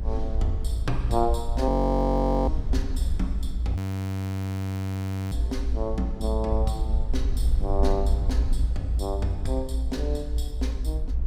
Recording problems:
low-frequency rumble; below 60 Hz, SNR -1 dB
audio freezing; at 1.5 s for 1 s and at 4 s for 1.5 s

